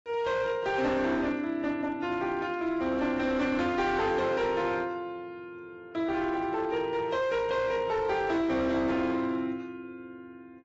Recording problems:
codec artefacts; AAC, log-spectral distance 2 dB, nothing above 7.6 kHz
distorted audio; hard clipping, signal-to-distortion ratio 12 dB

